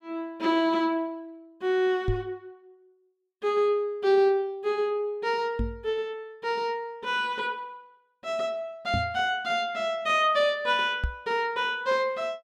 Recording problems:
microphone thump; 4 times, first at 2 s; peak +2 dB vs average level

